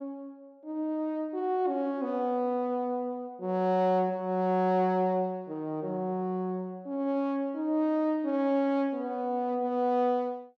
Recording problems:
none

